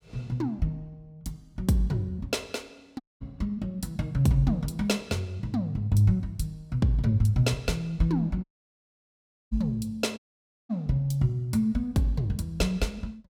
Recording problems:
audio cutting out; at 3 s, at 8.5 s for 1 s and at 10 s for 0.5 s

